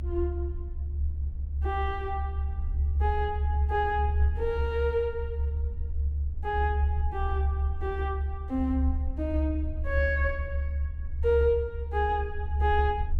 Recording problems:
low-frequency rumble; below 74 Hz, strongest tone 72 Hz, SNR 0 dB

